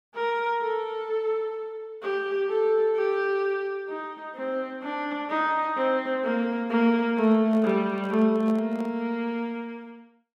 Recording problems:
microphone handling noise; from 7 to 9 s; peak -10 dB vs average level

